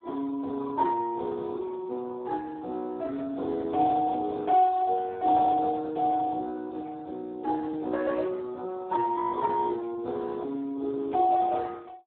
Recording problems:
telephone audio; 280 Hz to 2.2 kHz, Speex

